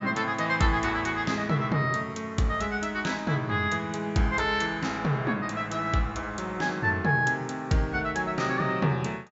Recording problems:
treble missing; nothing above 8 kHz

